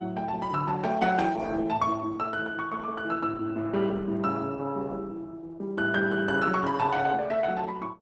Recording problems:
lossy compression; Opus, log-spectral distance 3 dB, nothing above 8.2 kHz

